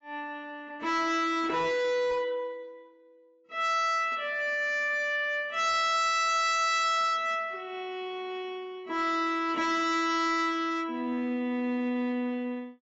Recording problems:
lossy compression; AAC, log-spectral distance 2 dB, nothing above 6.5 kHz
distorted audio; hard clipping, signal-to-distortion ratio 7 dB

